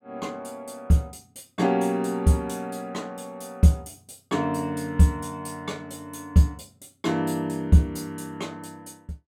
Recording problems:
none

